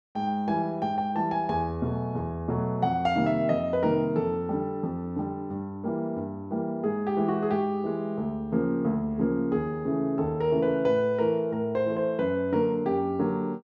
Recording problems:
none

